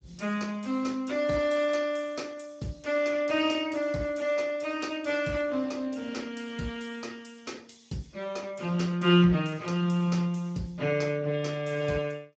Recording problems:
codec artefacts; Speex, log-spectral distance 4 dB, nothing above 7.3 kHz

